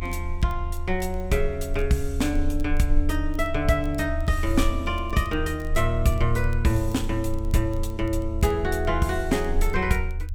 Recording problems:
low-frequency rumble; below 78 Hz, strongest tone 28 Hz, SNR 5 dB
crackle; vinyl, SNR 29 dB

